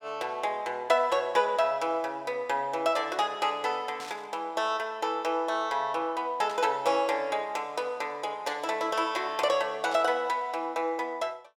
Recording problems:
static burst; at 4 s, at 6.5 s and at 10 s; peak -9 dB vs average level

